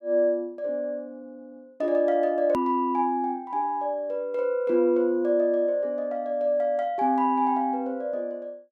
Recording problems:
hard cut with a click; at 2.5 s

